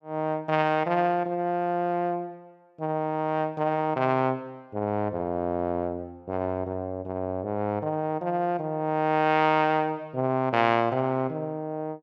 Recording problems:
none

